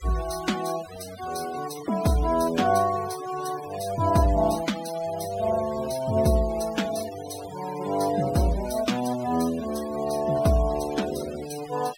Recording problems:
denoising artefacts; signal-to-artefact ratio 15 dB

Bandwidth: 16.5 kHz